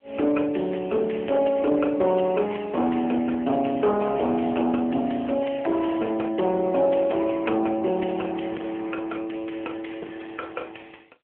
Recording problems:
phone line; 280 Hz to 3.2 kHz, AMR-NB
distortion; soft clipping, signal-to-distortion ratio 15 dB

